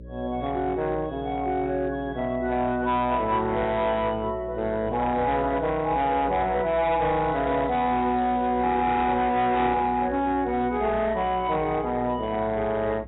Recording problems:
codec artefacts; AAC, log-spectral distance 2 dB, nothing above 3.8 kHz
distortion; hard clipping, signal-to-distortion ratio 11 dB
hum; 60 Hz, harmonics up to 600 Hz, SNR 17 dB
crackle; from 7.5 to 8.5 s; loose cable, SNR 27 dB

